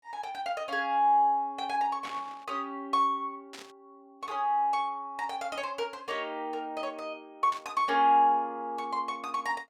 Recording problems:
burst of static; at 2 s, at 3.5 s and at 7.5 s; peak -9 dB vs average level

